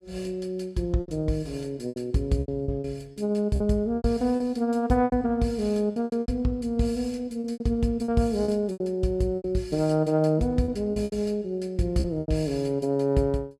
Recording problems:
lost packets; 11% of the sound replaced, filled with repeated pitch periods

